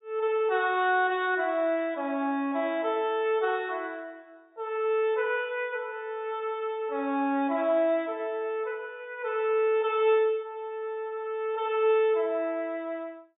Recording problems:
low-pass filter; nothing above 4 kHz

